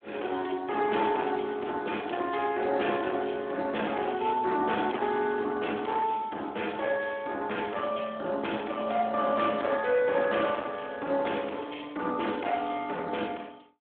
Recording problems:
telephone audio; 240 Hz to 3.6 kHz, Speex
distortion; hard clipping, signal-to-distortion ratio 12 dB

